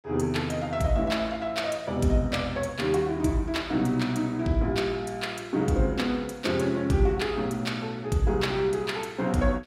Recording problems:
none

